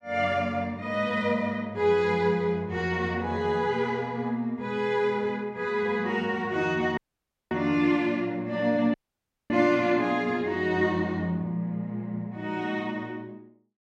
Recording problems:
audio cutting out; at 7 s for 0.5 s and at 9 s for 0.5 s

